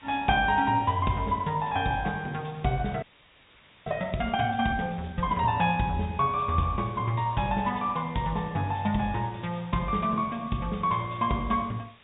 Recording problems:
treble missing; nothing above 4 kHz
hiss; SNR 27 dB
frozen audio; at 3 s for 1 s

